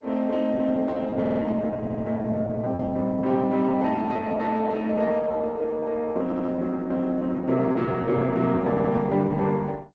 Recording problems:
lossy compression; Opus, then G.722, log-spectral distance 2 dB
lost packets; 15% of the sound replaced, filled with repeated pitch periods
audio stuttering; 4 times, first at 1 s

